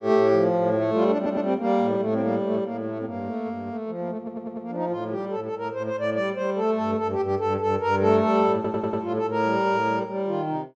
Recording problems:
stutter; at 1 s, at 4 s and at 8.5 s

